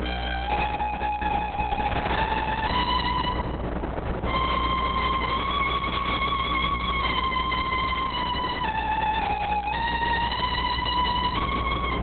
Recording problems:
lossy compression; Opus, log-spectral distance 6 dB, nothing above 4 kHz
distortion; soft clipping, signal-to-distortion ratio 6 dB
hum; 60 Hz, harmonics up to 600 Hz, SNR 11 dB
wind on the microphone; below 1.4 kHz, SNR 10 dB

